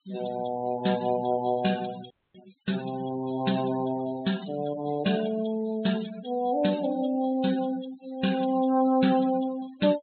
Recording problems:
treble missing; nothing above 4 kHz
noise reduction artefacts; signal-to-artefact ratio 15 dB
audio cutting out; at 2 s

